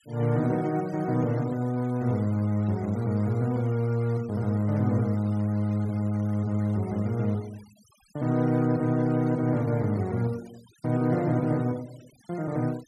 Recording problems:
noise reduction artefacts; signal-to-artefact ratio 25 dB

